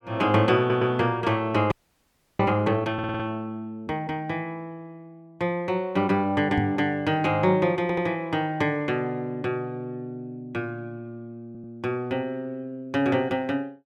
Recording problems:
audio stuttering; 4 times, first at 0.5 s
frozen audio; at 1.5 s for 0.5 s
microphone thump; at 6.5 s; peak +3 dB vs average level

